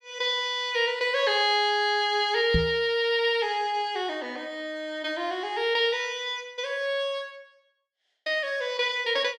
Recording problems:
knock on the microphone; at 2.5 s; peak +4 dB vs average level

